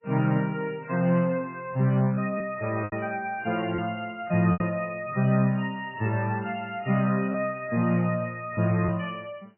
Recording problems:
lossy compression; MP3, log-spectral distance 3 dB, nothing above 2.8 kHz
lost packets; 3% of the sound replaced, filled with repeated pitch periods

